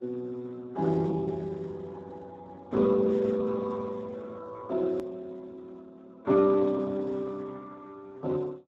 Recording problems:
codec artefacts; MP3, then Speex, log-spectral distance 3 dB, nothing above 13.1 kHz
click at an edit; at 5 s

